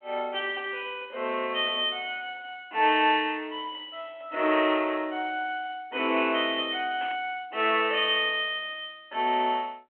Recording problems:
telephone audio; 240 Hz to 3.3 kHz, G.726
static burst; at 7 s; peak -9 dB vs average level

